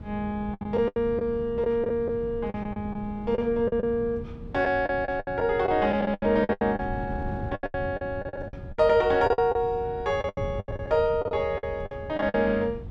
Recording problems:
wind on the microphone; below 170 Hz, SNR 13 dB
packet loss; 15% of the sound replaced, filled with the last packet

